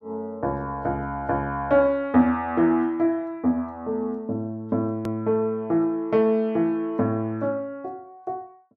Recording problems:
edit click; at 5 s

